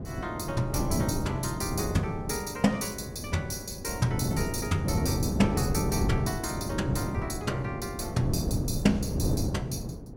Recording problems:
wind on the microphone; below 290 Hz, SNR 1 dB

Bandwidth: 18 kHz